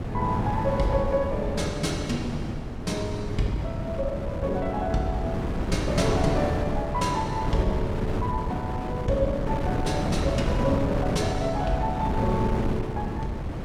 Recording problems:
wind on the microphone; below 340 Hz, SNR 1 dB

